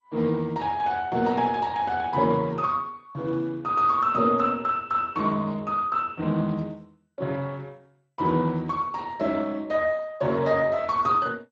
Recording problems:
lossy codec; Speex, then MP2, log-spectral distance 3 dB

